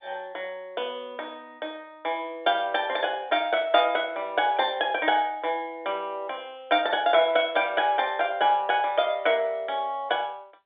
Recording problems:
phone line; 280 Hz to 3.6 kHz, G.711

